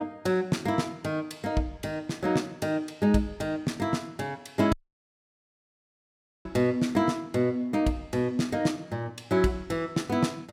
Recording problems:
dropout; at 4.5 s for 1.5 s

